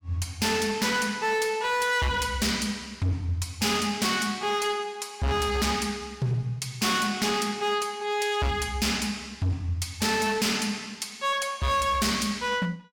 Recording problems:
distorted audio; hard clipping, signal-to-distortion ratio 7 dB

